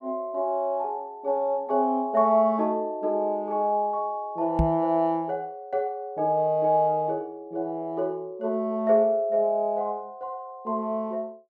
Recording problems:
knock on the microphone; at 4.5 s; peak +5 dB vs average level

